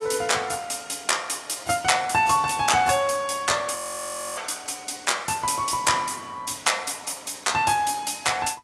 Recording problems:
lossy codec; AAC, log-spectral distance 7 dB, nothing above 11.3 kHz
audio freezing; at 4 s for 0.5 s

